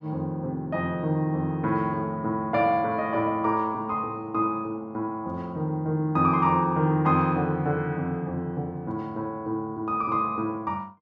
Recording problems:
none

